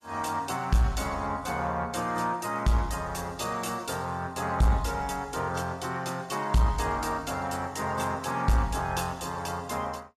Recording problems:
lossy codec; AAC, log-spectral distance 3 dB, nothing above 13.5 kHz
distortion; soft clipping, signal-to-distortion ratio 11 dB

